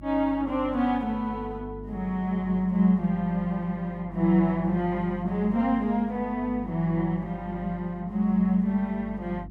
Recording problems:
electrical hum; 50 Hz, harmonics up to 350 Hz, SNR 17 dB

